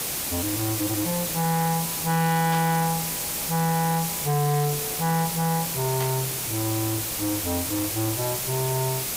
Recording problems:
distortion; soft clipping, signal-to-distortion ratio 8 dB
background hiss; slope -1 dB per octave, SNR 1 dB
static burst; at 2.5 s and at 6 s; peak -5 dB vs average level

